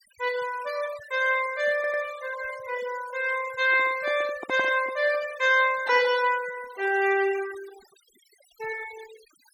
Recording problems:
noise reduction artefacts; signal-to-artefact ratio 17 dB
audio stuttering; at 1.5 s
handling noise; from 3.5 to 5.5 s; peak -7 dB vs average level

